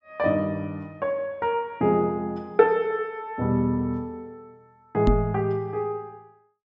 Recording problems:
treble missing; nothing above 7.6 kHz
microphone thump; at 5 s; peak +6 dB vs average level

